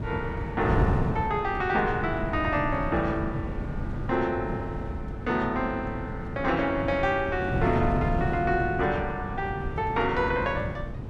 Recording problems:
wind noise; below 230 Hz, SNR 5 dB

